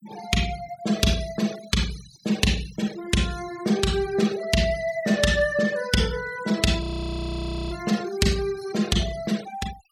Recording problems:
noise reduction artefacts; signal-to-artefact ratio 16 dB
audio freezing; at 7 s for 1 s

